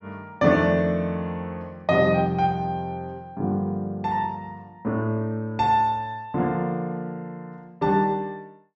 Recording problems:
treble cut off; nothing above 8 kHz

